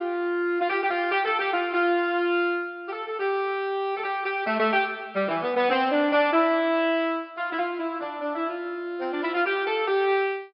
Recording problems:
low-pass filter; nothing above 5.5 kHz

